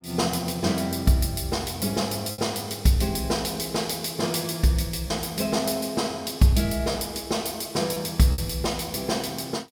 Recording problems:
lost packets; 1.9% of the sound replaced, filled with repeated pitch periods

